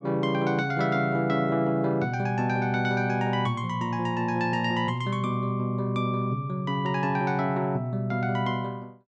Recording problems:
none

